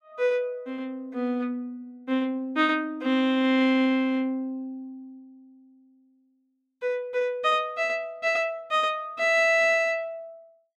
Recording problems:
none

